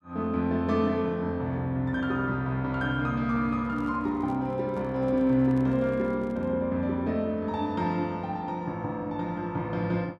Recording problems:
handling noise; from 3.5 to 6.5 s; peak -11 dB vs average level

